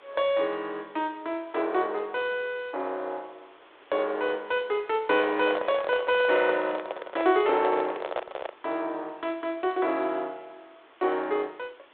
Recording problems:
phone line; 280 Hz to 4 kHz, G.726
background hiss; SNR 27 dB
handling noise; from 5 to 8.5 s; peak +2 dB vs average level

